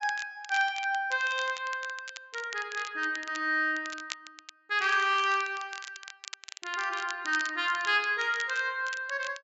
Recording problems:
low-pass filter; nothing above 8 kHz
crackle; vinyl, SNR 15 dB

